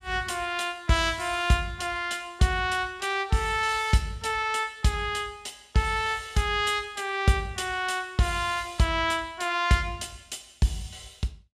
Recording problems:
none

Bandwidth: 15.5 kHz